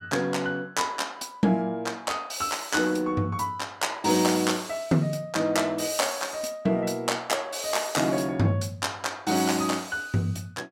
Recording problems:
none

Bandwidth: 16.5 kHz